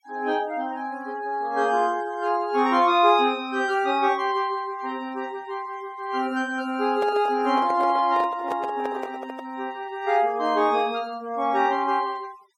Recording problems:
denoising artefacts; signal-to-artefact ratio 24 dB
handling noise; from 7 to 9.5 s; peak -4 dB vs average level

